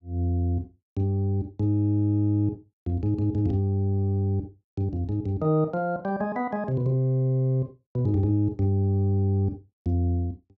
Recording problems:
none

